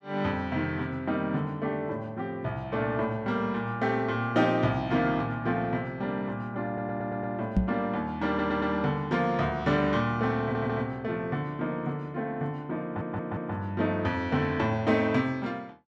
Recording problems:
audio stuttering; 4 times, first at 6.5 s
knock on the microphone; at 7.5 s; peak +8 dB vs average level

